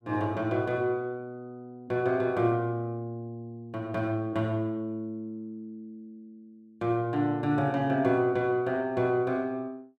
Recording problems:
none

